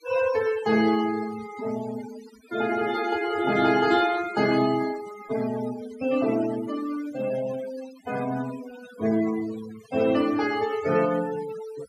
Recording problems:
denoising artefacts; signal-to-artefact ratio 14 dB

